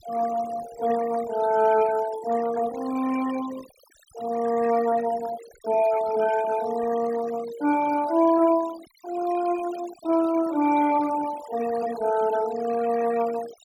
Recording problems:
noise reduction artefacts; signal-to-artefact ratio 16 dB

